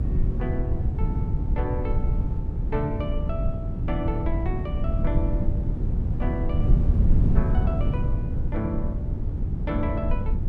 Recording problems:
electrical hum; 60 Hz, harmonics up to 1.3 kHz, SNR 12 dB
wind on the microphone; below 120 Hz, SNR -7 dB

